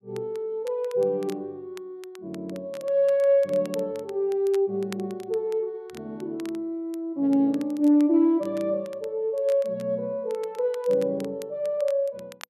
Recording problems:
crackle; vinyl, SNR 25 dB

